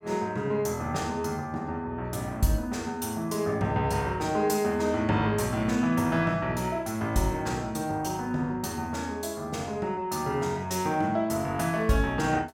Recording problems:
none

